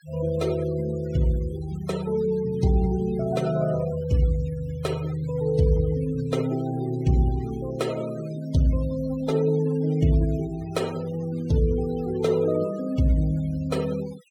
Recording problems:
denoising artefacts; signal-to-artefact ratio 20 dB

